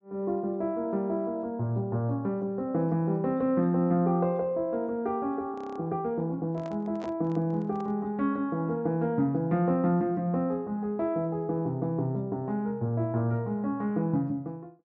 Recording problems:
low-pass filter; nothing above 8 kHz
frozen audio; at 5.5 s
handling noise; from 6.5 to 8 s; peak -10 dB vs average level

